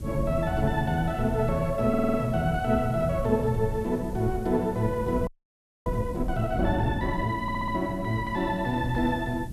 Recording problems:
hiss; slope +4 dB per octave, SNR 27 dB
rumble; below 110 Hz, SNR 11 dB
wind on the microphone; below 300 Hz, SNR 14 dB
stutter; at 2 s and at 7.5 s
audio freezing; at 5.5 s for 0.5 s

